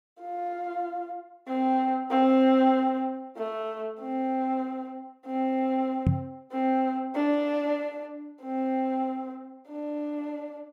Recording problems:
microphone thump; at 6 s; peak +7 dB vs average level

